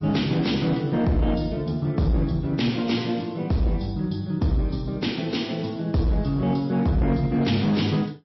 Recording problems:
lossy codec; MP3, log-spectral distance 3 dB, nothing above 5.7 kHz
distorted audio; hard clipping, signal-to-distortion ratio 12 dB

